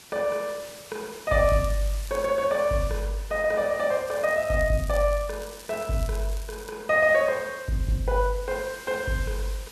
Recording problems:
hiss; slope 0 dB per octave, SNR 19 dB
crackling; at 1.5 s and from 4 to 6.5 s; loose cable, SNR 20 dB

